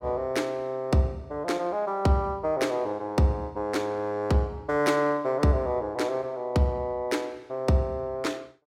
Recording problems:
none

